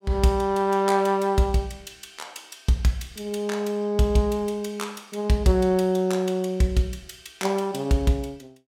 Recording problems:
none

